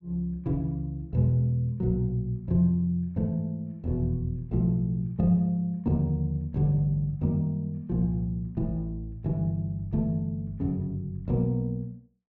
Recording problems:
none

